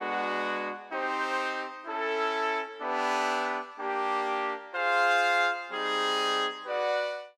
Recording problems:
none

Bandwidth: 15 kHz